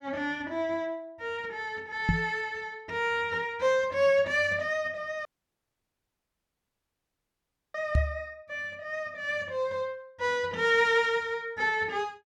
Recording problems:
microphone bump; at 2 s and at 8 s; peak +6 dB vs average level
dropout; at 5.5 s for 2.5 s

